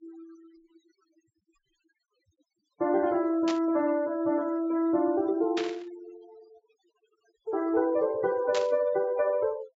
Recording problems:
treble missing; nothing above 8 kHz
noise reduction artefacts; signal-to-artefact ratio 20 dB
static burst; at 3.5 s, at 5.5 s and at 8.5 s; peak -3 dB vs average level

